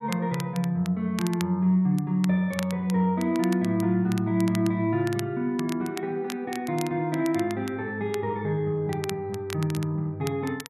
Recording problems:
crackle; vinyl, SNR 16 dB

